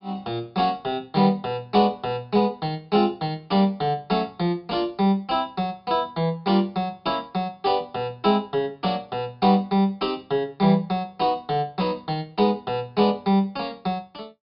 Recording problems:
low-pass filter; nothing above 5.5 kHz

